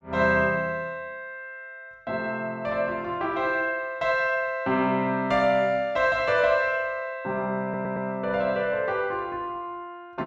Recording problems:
stutter; at 7.5 s

